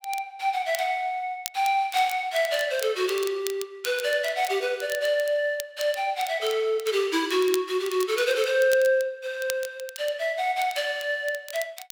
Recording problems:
crackling; vinyl, SNR 15 dB

